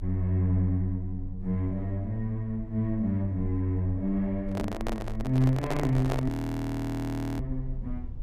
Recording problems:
rumble; below 48 Hz, strongest tone 22 Hz, SNR 13 dB
microphone handling noise; from 4.5 to 6.5 s; peak +1 dB vs average level
frozen audio; at 6.5 s for 1 s

